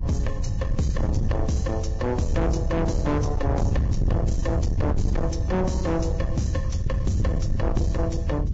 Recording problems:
lossy codec; Vorbis, log-spectral distance 2 dB, nothing above 7.3 kHz
distortion; soft clipping, signal-to-distortion ratio 7 dB
rumble; below 120 Hz, SNR -1 dB

